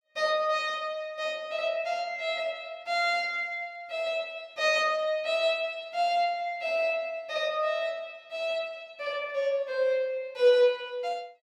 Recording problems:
none

